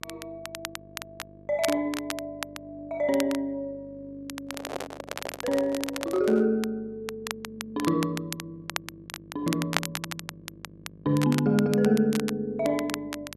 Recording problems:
electrical hum; 50 Hz, harmonics up to 700 Hz, SNR 24 dB
crackling; vinyl, SNR 10 dB
handling noise; from 4.5 to 6.5 s; peak -2 dB vs average level

